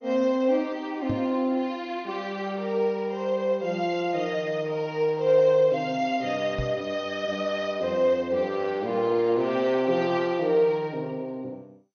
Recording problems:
codec artefacts; MP2, log-spectral distance 2 dB, nothing above 6.3 kHz
microphone thump; at 1 s and at 6.5 s; peak -2 dB vs average level

